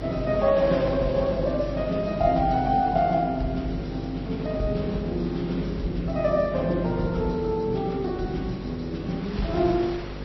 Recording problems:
lossy codec; MP3, then Vorbis, log-spectral distance 2 dB, nothing above 5.7 kHz
hum; 50 Hz, harmonics up to 600 Hz, SNR 11 dB
wind on the microphone; below 2.6 kHz, SNR 17 dB

